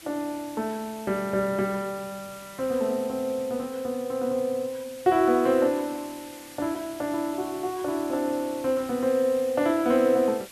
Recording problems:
hiss; slope 0 dB per octave, SNR 18 dB

